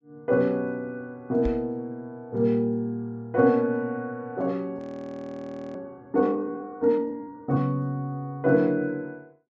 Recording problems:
low-pass filter; nothing above 8 kHz
microphone thump; at 1.5 s; peak -2 dB vs average level
frozen audio; at 5 s for 1 s

